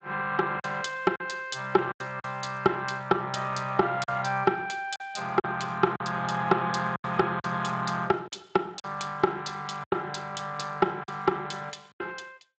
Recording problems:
lossy compression; Speex, log-spectral distance 6 dB, nothing above 7.8 kHz
lost packets; 6% of the sound replaced, filled with silence

